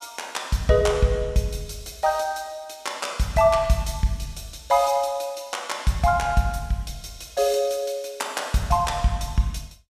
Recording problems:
none

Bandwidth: 14.5 kHz